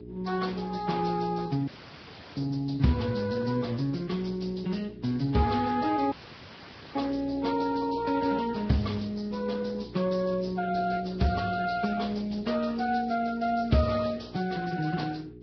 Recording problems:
codec artefacts; Speex, then Vorbis, log-spectral distance 7 dB, nothing above 5.5 kHz
hum; 60 Hz, harmonics up to 420 Hz, SNR 16 dB
dropout; at 1.5 s for 0.5 s and at 6 s for 1 s

